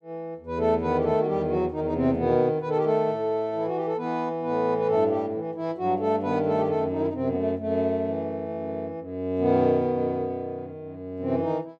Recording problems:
none

